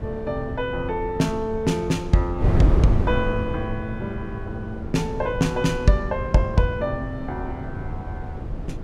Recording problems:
wind noise; below 160 Hz, SNR 5 dB

